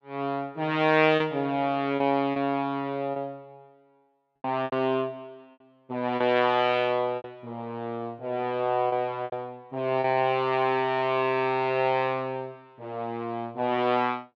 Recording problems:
lost packets; 5% of the sound replaced, filled with repeated pitch periods

